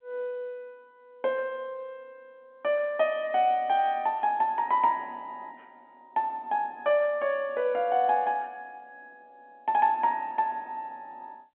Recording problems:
telephone audio; 190 Hz to 3.6 kHz, G.711

